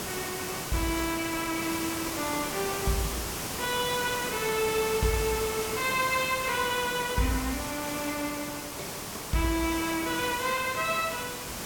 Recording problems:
hiss; slope -3 dB per octave, SNR 4 dB

